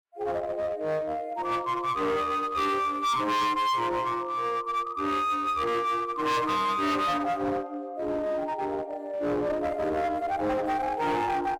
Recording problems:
distorted audio; hard clipping, uneven, signal-to-distortion ratio 7 dB

